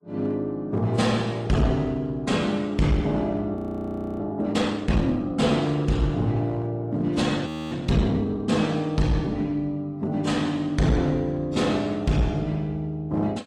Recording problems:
codec artefacts; AAC, log-spectral distance 2 dB, nothing above 16.1 kHz
distorted audio; hard clipping, uneven, signal-to-distortion ratio 10 dB
frozen audio; at 3.5 s for 0.5 s and at 7.5 s

